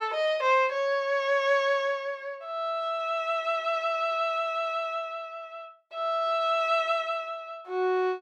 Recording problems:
none

